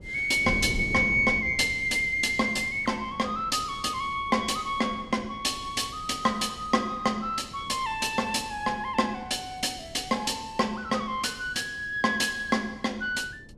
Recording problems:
wind noise; below 260 Hz, SNR 16 dB

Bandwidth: 14.5 kHz